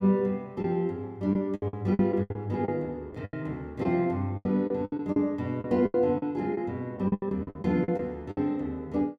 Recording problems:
lost packets; 14% of the sound replaced, filled with the last packet

